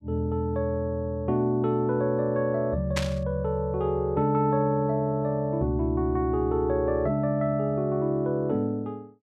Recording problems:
burst of static; at 3 s; peak +1 dB vs average level

